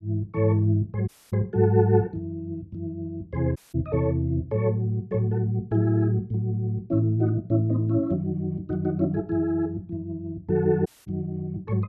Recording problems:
dropout; at 1 s, at 3.5 s and at 11 s

